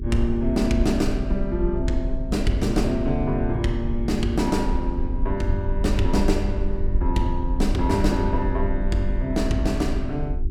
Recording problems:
hum; 50 Hz, harmonics up to 400 Hz, SNR 11 dB
rumble; below 56 Hz, SNR 4 dB

